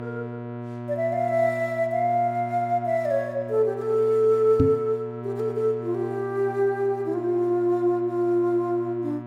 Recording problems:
hum; 60 Hz, harmonics up to 1.7 kHz, SNR 13 dB
knock on the microphone; at 4.5 s; peak +6 dB vs average level

